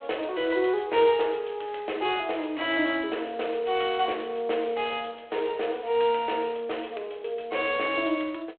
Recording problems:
telephone audio; 300 Hz to 3.5 kHz, G.726

